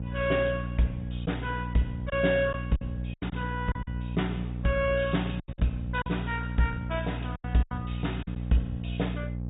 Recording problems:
low-pass filter; nothing above 3.7 kHz
codec artefacts; MP2, log-spectral distance 4 dB
electrical hum; 60 Hz, harmonics up to 540 Hz, SNR 4 dB
lost packets; 7% of the sound replaced, filled with silence

